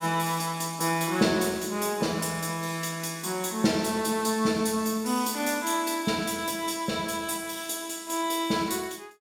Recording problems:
none

